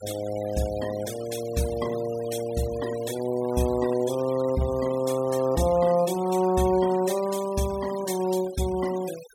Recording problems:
noise reduction artefacts; signal-to-artefact ratio 16 dB

